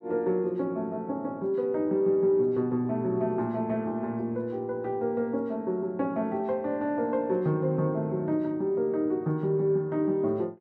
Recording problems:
none

